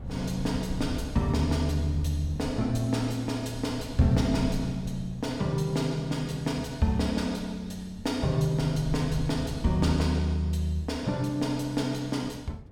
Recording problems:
wind noise; below 140 Hz, SNR 13 dB

